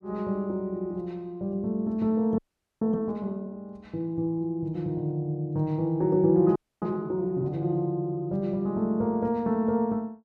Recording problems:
frozen audio; at 2.5 s and at 6.5 s

